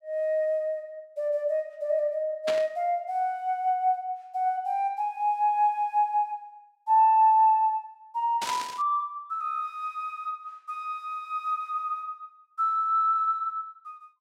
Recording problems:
static burst; at 2.5 s and at 8.5 s; peak -2 dB vs average level

